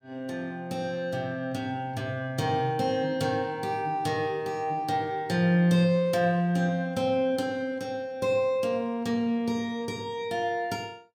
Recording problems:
none

